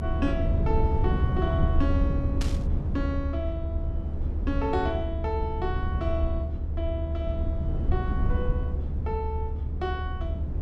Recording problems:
low-frequency rumble; below 96 Hz, SNR -5 dB
static burst; at 2.5 s; peak +2 dB vs average level

